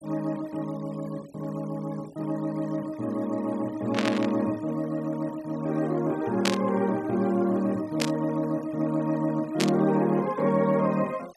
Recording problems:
denoising artefacts; signal-to-artefact ratio 25 dB
burst of static; 4 times, first at 4 s; peak +4 dB vs average level

